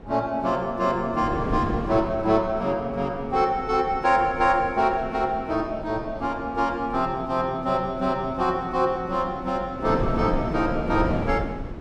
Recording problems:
wind noise; below 380 Hz, SNR 9 dB

